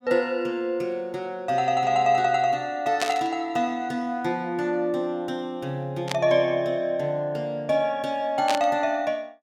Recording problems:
static burst; at 3 s, at 6 s and at 8.5 s; peak +1 dB vs average level

